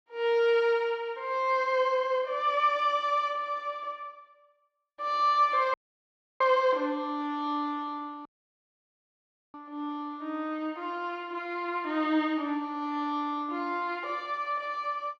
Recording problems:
audio cutting out; at 5.5 s for 0.5 s and at 8.5 s for 1.5 s

